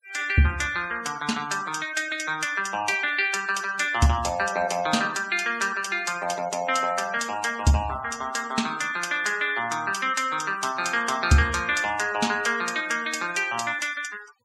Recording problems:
noise reduction artefacts; signal-to-artefact ratio 18 dB

